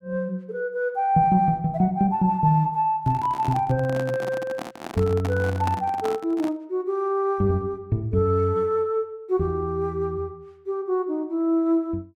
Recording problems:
microphone handling noise; from 3 to 6.5 s; peak -3 dB vs average level

